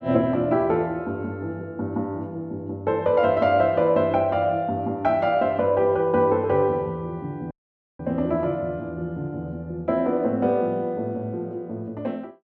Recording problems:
dropout; at 7.5 s

